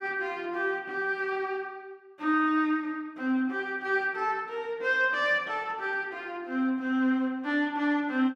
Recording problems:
none

